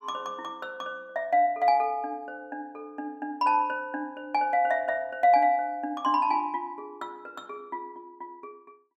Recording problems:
none

